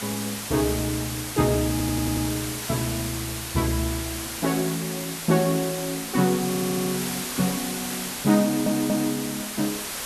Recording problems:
background hiss; slope -1 dB per octave, SNR 5 dB
stutter; at 1.5 s, at 6.5 s and at 8.5 s

